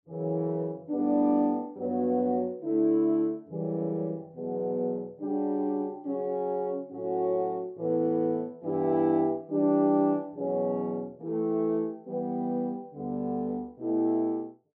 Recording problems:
none

